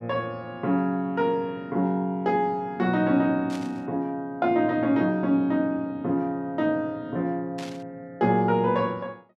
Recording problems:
burst of static; at 3.5 s and at 7.5 s; peak -11 dB vs average level

